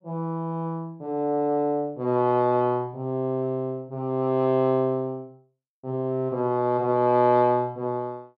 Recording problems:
none

